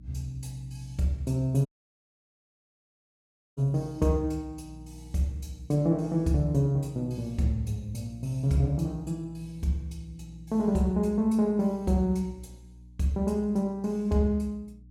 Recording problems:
electrical hum; 60 Hz, harmonics up to 300 Hz, SNR 20 dB
audio cutting out; at 1.5 s for 2 s

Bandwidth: 16 kHz